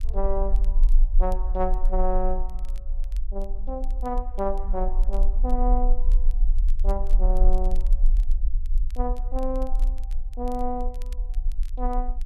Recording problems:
rumble; below 36 Hz, strongest tone 24 Hz, SNR -4 dB
crackle; vinyl, SNR 27 dB

